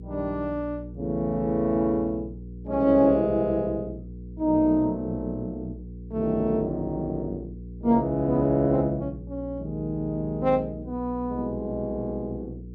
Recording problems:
electrical hum; 60 Hz, harmonics up to 480 Hz, SNR 14 dB

